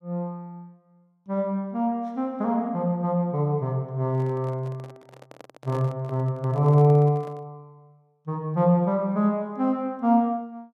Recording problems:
handling noise; from 4 to 7.5 s; peak -11 dB vs average level

